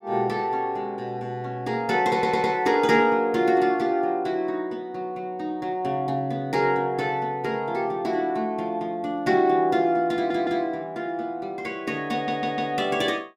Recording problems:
audio stuttering; at 2 s, at 10 s and at 12 s

